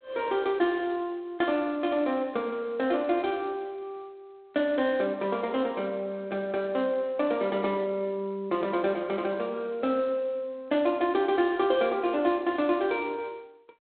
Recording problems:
telephone audio; 220 Hz to 3.9 kHz, G.726

